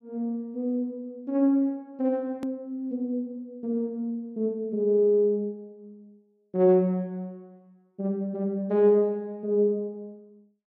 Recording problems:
click at an edit; at 2.5 s

